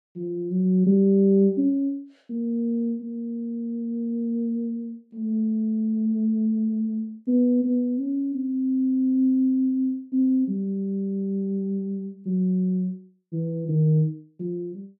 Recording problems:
none

